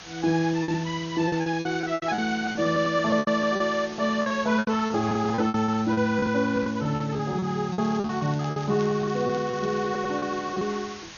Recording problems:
lossy codec; MP2, log-spectral distance 8 dB, nothing above 6.5 kHz
hiss; slope 0 dB per octave, SNR 17 dB
packet loss; 16% of the sound replaced, filled with repeated pitch periods
crackle; from 7.5 to 10 s; loose cable, SNR 22 dB

